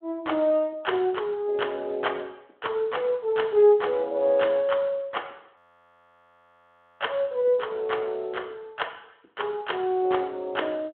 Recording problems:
phone line; 280 Hz to 3.3 kHz, Speex
audio freezing; at 5.5 s for 1.5 s

